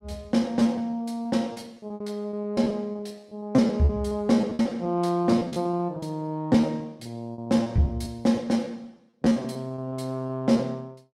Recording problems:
packet loss; 16% of the sound replaced, filled with repeated pitch periods

